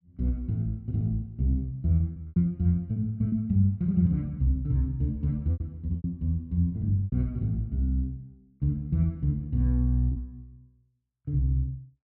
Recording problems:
lost packets; 5% of the sound replaced, filled with repeated pitch periods

